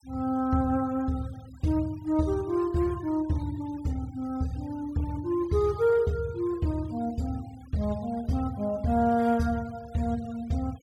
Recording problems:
denoising artefacts; signal-to-artefact ratio 24 dB

